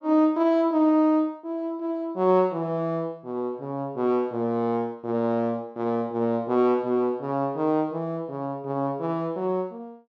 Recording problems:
none

